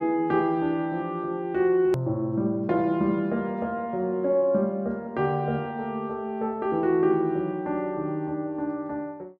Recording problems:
hard cut with a click; at 2 s

